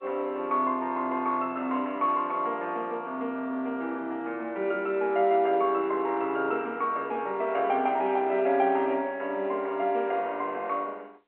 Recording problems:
telephone audio; 240 Hz to 3.2 kHz, G.711

